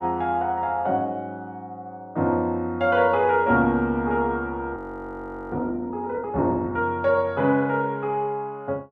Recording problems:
frozen audio; at 5 s for 1 s

